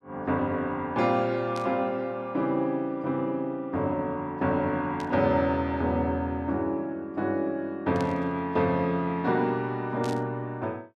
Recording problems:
static burst; 4 times, first at 1.5 s; peak -10 dB vs average level

